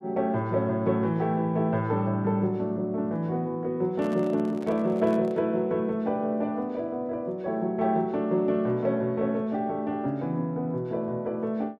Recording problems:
handling noise; from 4 to 5.5 s; peak -9 dB vs average level

